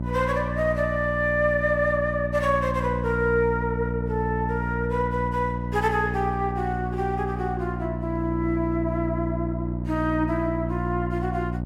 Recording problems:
hum; 60 Hz, harmonics up to 900 Hz, SNR 4 dB

